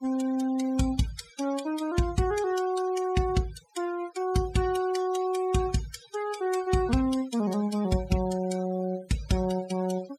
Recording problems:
denoising artefacts; signal-to-artefact ratio 15 dB

